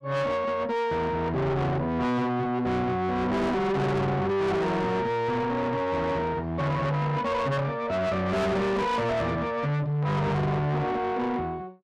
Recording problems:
distorted audio; soft clipping, signal-to-distortion ratio 6 dB

